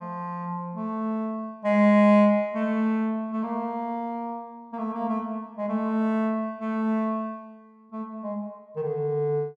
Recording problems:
none

